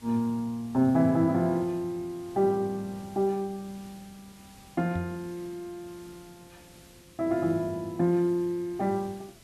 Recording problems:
hiss; SNR 24 dB
microphone thump; at 5 s; peak -4 dB vs average level

